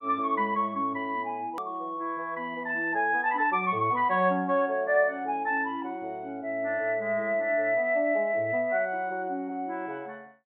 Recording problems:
treble missing; nothing above 4 kHz
edit click; at 1.5 s

